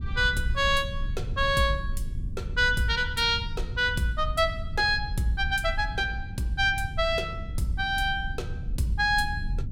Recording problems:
rumble; below 84 Hz, SNR 8 dB

